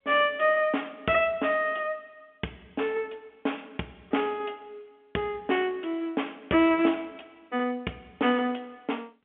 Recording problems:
phone line; 220 Hz to 3.4 kHz, G.711

